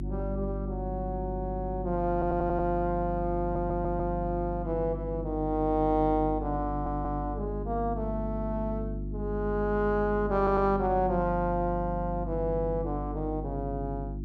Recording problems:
hum; 50 Hz, harmonics up to 350 Hz, SNR 6 dB
stutter; 4 times, first at 2 s

